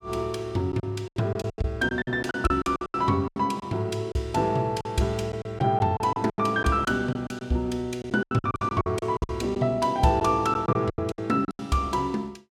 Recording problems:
lost packets; 15% of the sound replaced, filled with silence

